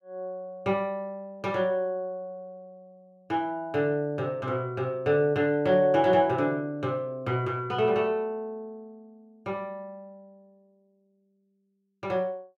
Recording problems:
none

